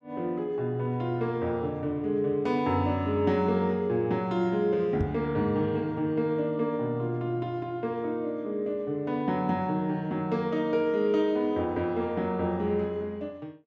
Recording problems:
knock on the microphone; at 5 s; peak +1 dB vs average level

